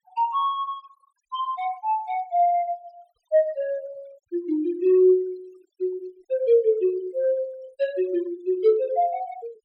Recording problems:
denoising artefacts; signal-to-artefact ratio 27 dB

